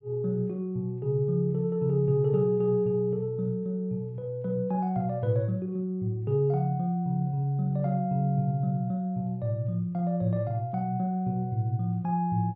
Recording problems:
none

